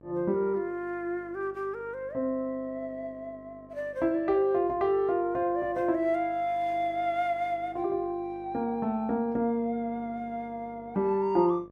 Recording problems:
electrical hum; 50 Hz, harmonics up to 1.6 kHz, SNR 24 dB

